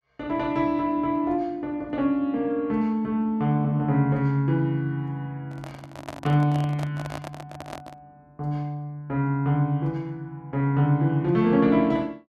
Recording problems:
handling noise; from 5.5 to 8 s; peak -6 dB vs average level

